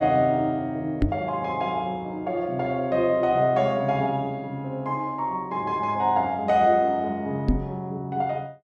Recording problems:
microphone bump; at 1 s and at 7.5 s; peak +7 dB vs average level

